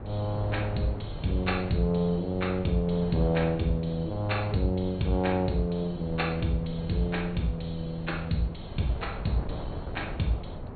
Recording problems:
treble cut off; nothing above 4.4 kHz
wind on the microphone; below 400 Hz, SNR 10 dB

